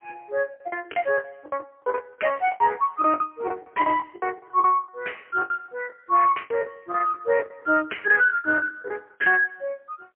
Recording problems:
telephone audio; 260 Hz to 3.2 kHz, AMR-NB, then MP3
lost packets; 17% of the sound replaced, filled with the last packet

